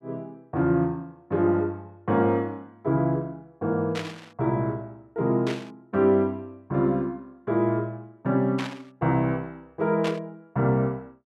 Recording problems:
static burst; 4 times, first at 4 s; peak -3 dB vs average level

